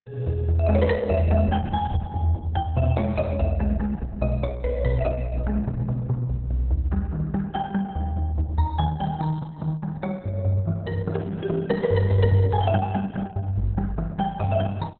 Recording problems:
lossy compression; Opus, log-spectral distance 3 dB

